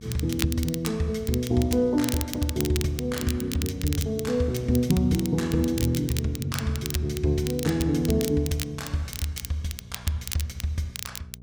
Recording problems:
hum; 60 Hz, harmonics up to 480 Hz, SNR 20 dB
crackle; vinyl, SNR 10 dB

